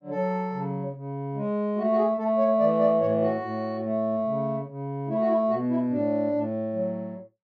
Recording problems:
none

